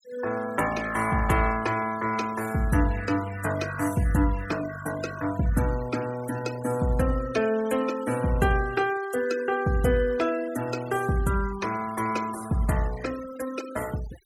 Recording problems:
denoising artefacts; signal-to-artefact ratio 15 dB

